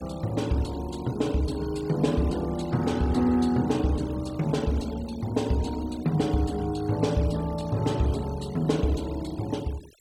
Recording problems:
noise reduction artefacts; signal-to-artefact ratio 21 dB

